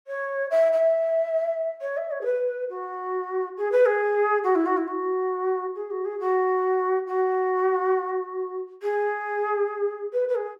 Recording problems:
none

